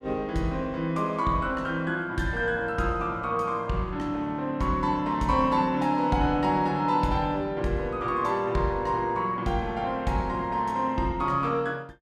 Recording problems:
none

